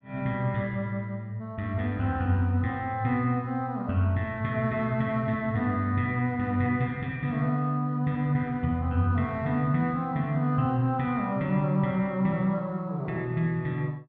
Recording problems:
none

